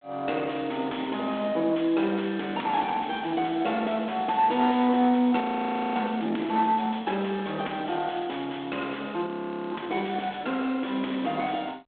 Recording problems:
telephone audio; 220 Hz to 3.5 kHz, G.726
distorted audio; soft clipping, signal-to-distortion ratio 13 dB
audio freezing; at 5.5 s for 0.5 s and at 9.5 s

